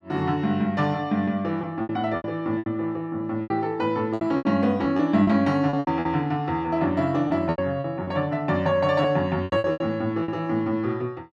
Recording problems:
lost packets; 11% of the sound replaced, filled with repeated pitch periods

